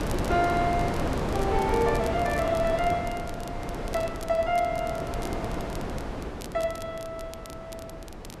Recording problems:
wind on the microphone; below 710 Hz, SNR 3 dB
crackle; vinyl, SNR 19 dB

